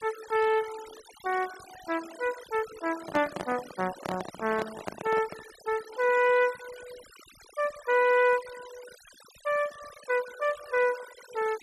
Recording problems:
noise reduction artefacts; signal-to-artefact ratio 17 dB
microphone handling noise; from 3 to 5.5 s; peak -2 dB vs average level

